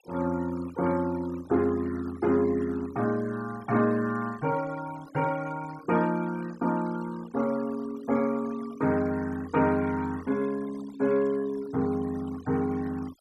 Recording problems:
denoising artefacts; signal-to-artefact ratio 20 dB

